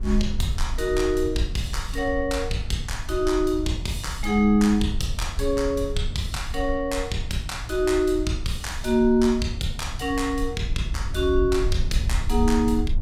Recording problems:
low-frequency rumble; below 66 Hz, SNR 7 dB

